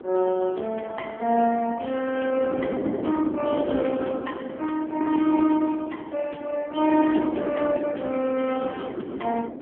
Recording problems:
telephone audio; 190 Hz to 3 kHz, AMR-NB
wind noise; below 460 Hz, SNR 6 dB

